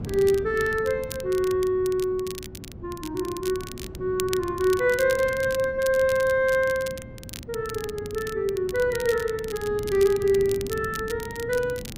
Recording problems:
wind noise; below 260 Hz, SNR 15 dB
crackle; vinyl, SNR 15 dB

